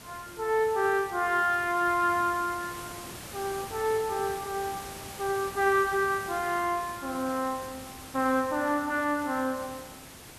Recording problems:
background hiss; slope -3 dB per octave, SNR 14 dB

